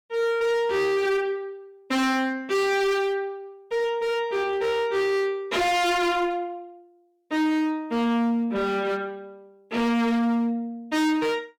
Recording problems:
distortion; hard clipping, signal-to-distortion ratio 7 dB

